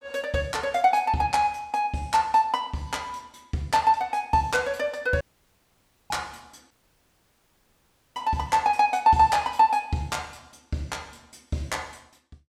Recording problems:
dropout; at 5 s for 1 s and at 6.5 s for 1.5 s

